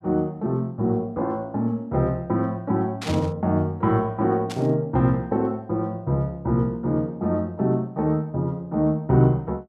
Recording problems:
static burst; at 3 s and at 4.5 s; peak -6 dB vs average level

